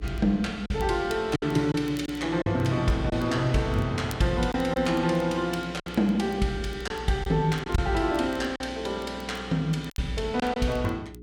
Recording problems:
electrical hum; 60 Hz, harmonics up to 420 Hz, SNR 17 dB
crackling; vinyl, SNR 26 dB
packet loss; 5% of the sound replaced, filled with silence

